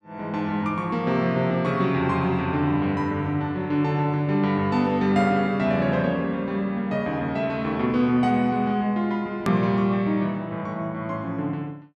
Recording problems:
click at an edit; at 9.5 s

